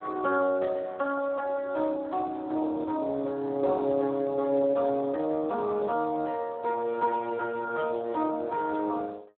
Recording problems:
phone line; 240 Hz to 2.8 kHz, Speex

